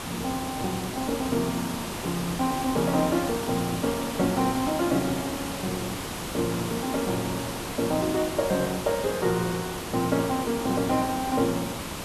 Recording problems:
background hiss; slope -4 dB per octave, SNR 5 dB

